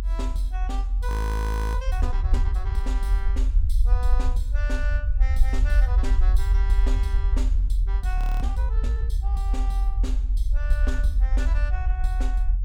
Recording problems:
low-frequency rumble; below 54 Hz, strongest tone 42 Hz, SNR -12 dB
audio freezing; at 1 s for 0.5 s and at 8 s

